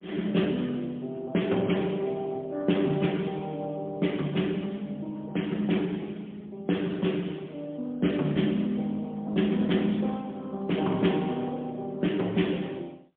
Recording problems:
phone line; 150 Hz to 3.4 kHz, AMR-NB, then MP3

